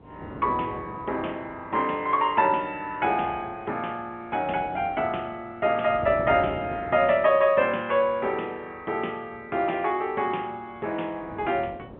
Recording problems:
telephone audio; 280 Hz to 3.3 kHz, G.711
wind on the microphone; below 540 Hz, SNR 17 dB

